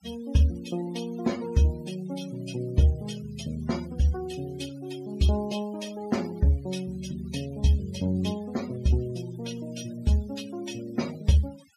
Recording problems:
noise reduction artefacts; signal-to-artefact ratio 18 dB

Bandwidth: 15 kHz